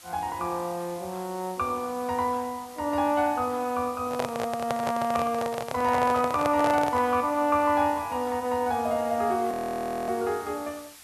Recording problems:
hiss; slope +2 dB per octave, SNR 20 dB
microphone handling noise; from 4 to 7 s; peak +1 dB vs average level
audio freezing; at 9.5 s for 0.5 s

